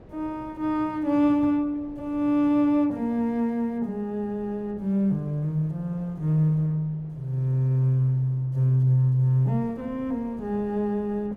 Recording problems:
wind noise; below 450 Hz, SNR 25 dB

